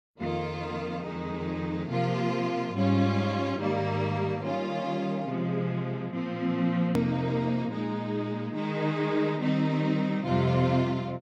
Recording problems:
click at an edit; at 7 s

